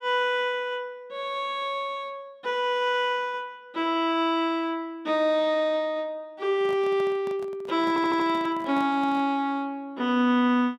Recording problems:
microphone handling noise; from 6.5 to 9.5 s; peak -11 dB vs average level
stutter; at 8 s

